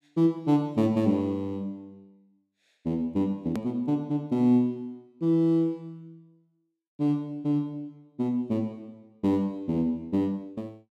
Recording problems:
edit click; at 3.5 s

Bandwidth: 13.5 kHz